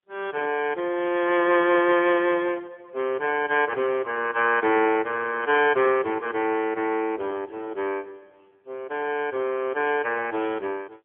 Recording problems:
telephone audio; 300 Hz to 3.1 kHz, AMR-NB

